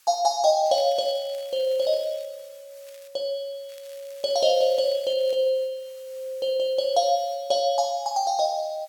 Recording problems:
background hiss; slope +3 dB per octave, SNR 29 dB
crackle; from 0.5 to 2.5 s, at 3 s and from 3.5 to 5.5 s; loose cable, SNR 27 dB

